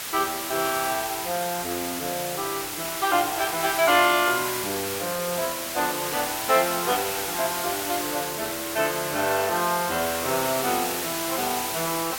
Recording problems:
background hiss; slope 0 dB per octave, SNR 3 dB

